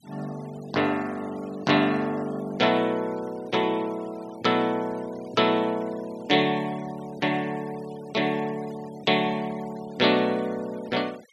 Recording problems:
denoising artefacts; signal-to-artefact ratio 22 dB

